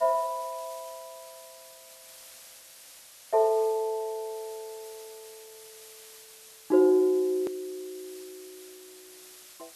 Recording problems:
background hiss; slope +2 dB per octave, SNR 20 dB
click at an edit; at 7.5 s

